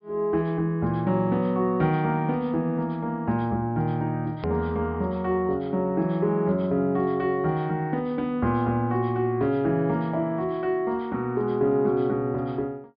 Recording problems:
low-pass filter; nothing above 5.5 kHz
click at an edit; at 4.5 s

